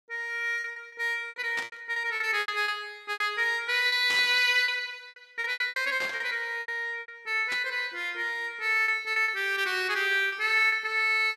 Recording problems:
packet loss; 12% of the sound replaced, filled with repeated pitch periods
burst of static; 4 times, first at 1.5 s; peak -5 dB vs average level

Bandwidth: 15 kHz